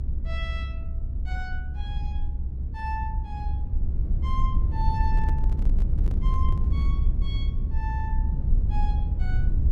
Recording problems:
low-frequency rumble; below 68 Hz, SNR -11 dB
microphone handling noise; from 5 to 7 s; peak 0 dB vs average level

